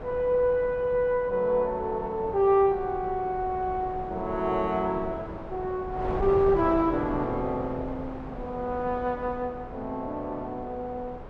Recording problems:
wind on the microphone; below 670 Hz, SNR 11 dB

